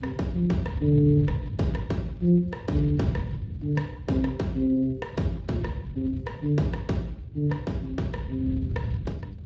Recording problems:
lossy compression; Speex, log-spectral distance 2 dB, nothing above 7.3 kHz
rumble; below 140 Hz, SNR 7 dB

